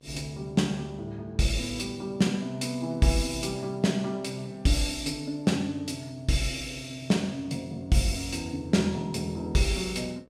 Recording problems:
hum; 60 Hz, harmonics up to 2.2 kHz, SNR 29 dB

